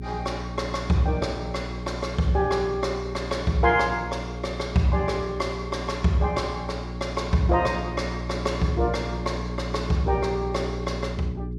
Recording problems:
electrical hum; 60 Hz, harmonics up to 420 Hz, SNR 7 dB

